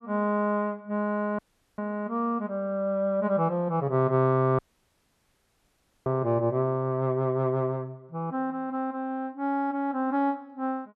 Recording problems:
dropout; at 1.5 s and at 4.5 s for 1.5 s

